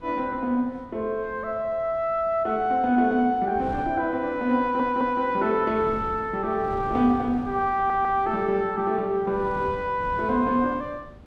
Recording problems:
wind noise; below 380 Hz, SNR 18 dB
stutter; at 4.5 s and at 8 s

